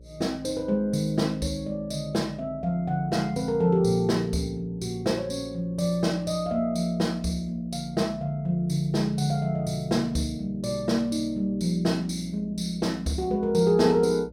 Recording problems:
hum; 60 Hz, harmonics up to 600 Hz, SNR 23 dB

